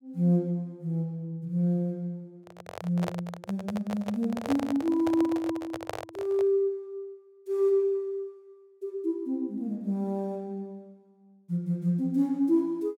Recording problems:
handling noise; from 2.5 to 6.5 s; peak 0 dB vs average level

